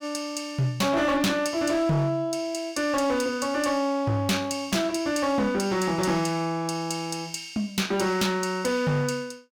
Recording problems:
distorted audio; hard clipping, signal-to-distortion ratio 11 dB

